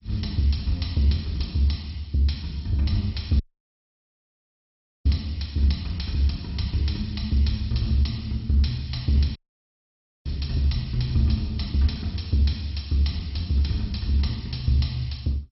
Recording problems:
codec artefacts; MP2, log-spectral distance 5 dB, nothing above 5.5 kHz
audio cutting out; at 3.5 s for 1.5 s and at 9.5 s for 1 s

